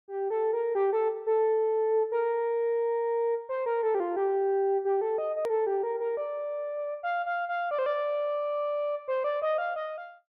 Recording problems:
edit click; at 5.5 s

